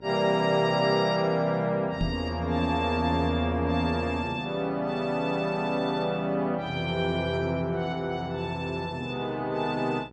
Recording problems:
hum; 60 Hz, harmonics up to 1.5 kHz, SNR 24 dB
microphone thump; at 2 s; peak +1 dB vs average level

